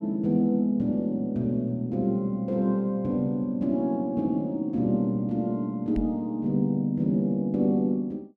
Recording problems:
knock on the microphone; at 6 s; peak -1 dB vs average level

